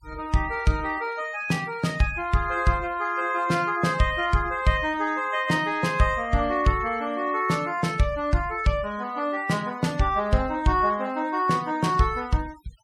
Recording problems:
denoising artefacts; signal-to-artefact ratio 23 dB

